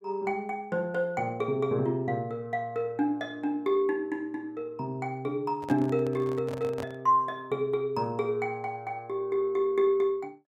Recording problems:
handling noise; from 5.5 to 7 s; peak -5 dB vs average level

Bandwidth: 16 kHz